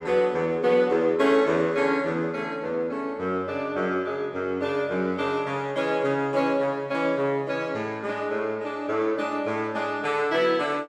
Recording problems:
none

